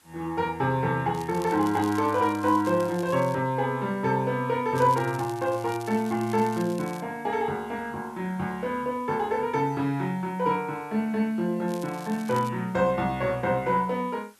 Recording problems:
hiss; SNR 30 dB
crackling; from 1 to 3.5 s, from 4.5 to 7 s and at 12 s; loose cable, SNR 20 dB

